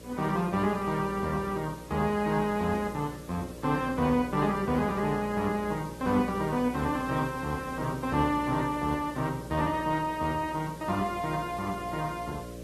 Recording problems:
lossy compression; AAC, log-spectral distance 4 dB
hum; 60 Hz, harmonics up to 600 Hz, SNR 14 dB
background hiss; slope 0 dB per octave, SNR 21 dB

